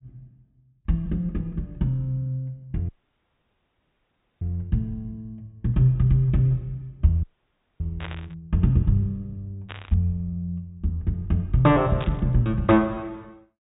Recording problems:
treble missing; nothing above 4 kHz
audio cutting out; at 3 s for 1.5 s and at 7 s for 0.5 s
burst of static; at 8 s, at 9.5 s and at 12 s; peak -8 dB vs average level

